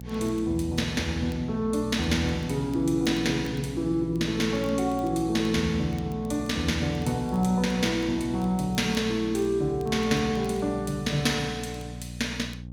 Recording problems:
hum; 60 Hz, harmonics up to 540 Hz, SNR 13 dB
crackle; vinyl, SNR 29 dB

